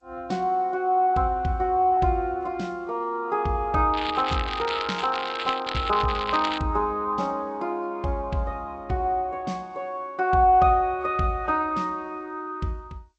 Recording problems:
lossy compression; G.722, then Vorbis, log-spectral distance 5 dB
crackling; from 4 to 6.5 s; loose cable, SNR 8 dB

